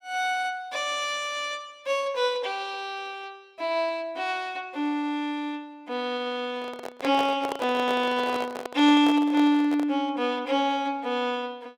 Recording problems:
microphone handling noise; from 6.5 to 10 s; peak -1 dB vs average level

